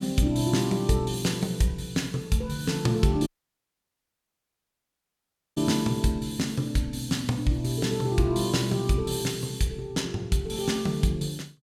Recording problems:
audio cutting out; at 3.5 s for 2.5 s

